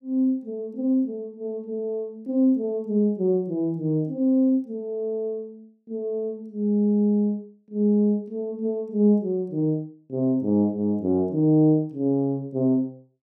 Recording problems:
none

